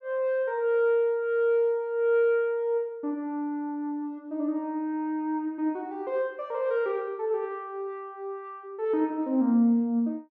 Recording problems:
none

